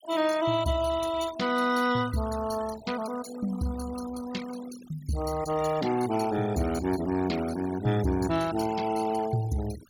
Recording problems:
denoising artefacts; signal-to-artefact ratio 14 dB

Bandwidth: 17.5 kHz